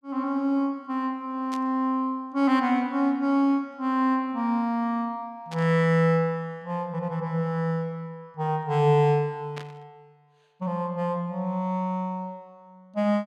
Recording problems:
burst of static; at 1.5 s, at 5.5 s and at 9.5 s; peak -10 dB vs average level

